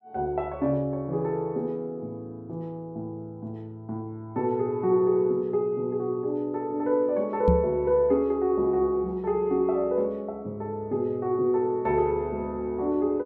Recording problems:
knock on the microphone; at 7.5 s; peak +7 dB vs average level

